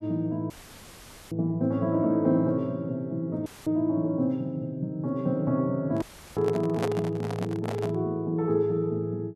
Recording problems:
audio cutting out; at 0.5 s for 1 s, at 3.5 s and at 6 s; filled with static
handling noise; from 6 to 8 s; peak +1 dB vs average level

